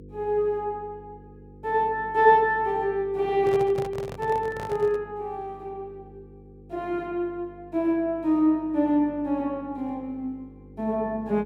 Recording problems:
electrical hum; 50 Hz, harmonics up to 500 Hz, SNR 22 dB
microphone handling noise; from 3.5 to 5 s; peak -5 dB vs average level

